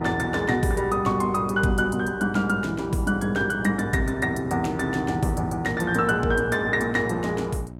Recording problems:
electrical hum; 60 Hz, harmonics up to 960 Hz, SNR 15 dB

